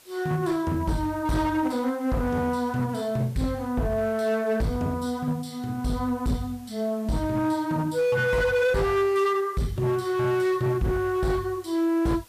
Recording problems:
distorted audio; hard clipping, signal-to-distortion ratio 12 dB
background hiss; slope -1 dB per octave, SNR 26 dB

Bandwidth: 14.5 kHz